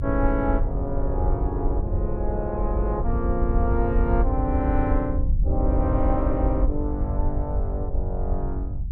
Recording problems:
low-frequency rumble; below 74 Hz, SNR -1 dB

